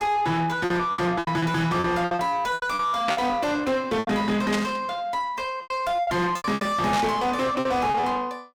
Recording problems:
distortion; soft clipping, signal-to-distortion ratio 6 dB
packet loss; 13% of the sound replaced, filled with repeated pitch periods
static burst; at 3 s, at 4.5 s and at 7 s; peak +1 dB vs average level

